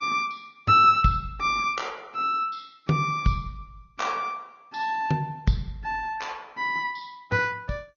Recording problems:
lossy compression; Vorbis, then MP2, log-spectral distance 2 dB, nothing above 6.5 kHz

